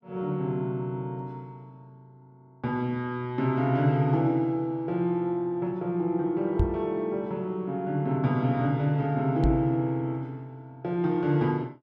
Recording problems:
knock on the microphone; at 6.5 s and at 9.5 s; peak +5 dB vs average level

